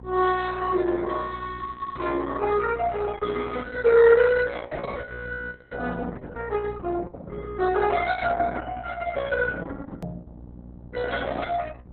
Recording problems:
lossy codec; Opus, log-spectral distance 4 dB, nothing above 4 kHz
hum; 60 Hz, harmonics up to 840 Hz, SNR 19 dB
click at an edit; at 10 s

